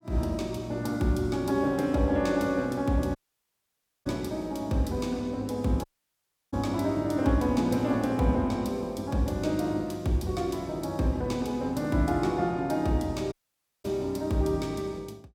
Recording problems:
audio cutting out; at 3 s for 1 s, at 6 s for 0.5 s and at 13 s for 0.5 s

